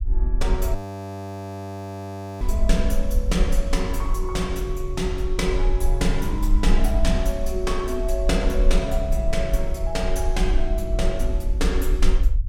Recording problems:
rumble; below 48 Hz, SNR -1 dB
frozen audio; at 1 s for 1.5 s

